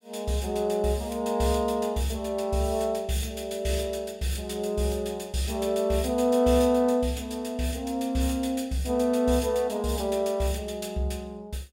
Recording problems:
none

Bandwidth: 16.5 kHz